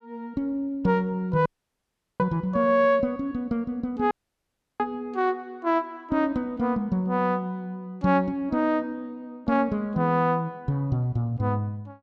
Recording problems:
audio cutting out; at 1.5 s for 0.5 s and at 4 s for 0.5 s

